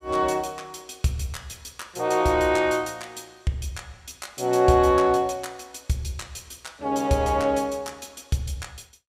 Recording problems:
none

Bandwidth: 15.5 kHz